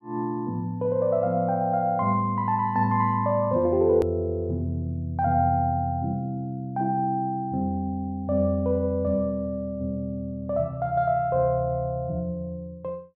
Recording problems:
edit click; at 4 s

